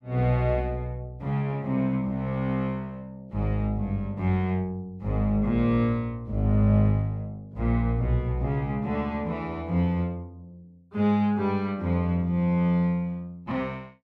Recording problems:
none

